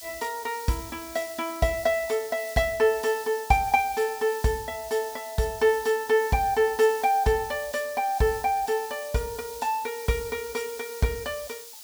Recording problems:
hiss; SNR 15 dB

